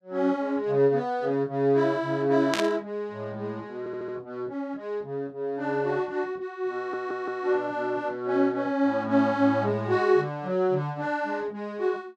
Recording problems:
static burst; at 2.5 s; peak +2 dB vs average level
audio stuttering; at 4 s and at 7 s

